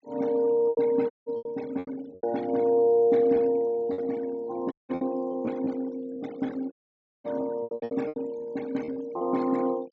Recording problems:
treble cut off; nothing above 7.5 kHz
noise reduction artefacts; signal-to-artefact ratio 21 dB
lost packets; 10% of the sound replaced, filled with repeated pitch periods
audio cutting out; at 1 s, at 4.5 s and at 6.5 s for 0.5 s

